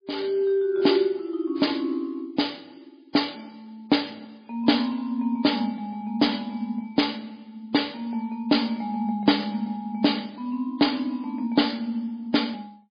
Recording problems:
lossy codec; MP3, log-spectral distance 4 dB, nothing above 4.8 kHz

